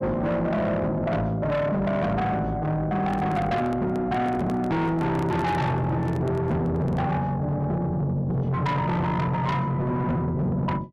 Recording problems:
distorted audio; soft clipping, signal-to-distortion ratio 7 dB
handling noise; from 3 to 7 s; peak -2 dB vs average level

